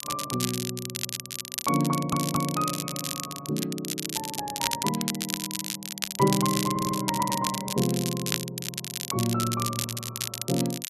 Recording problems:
crackling; vinyl, SNR 3 dB
stutter; at 2 s and at 6.5 s

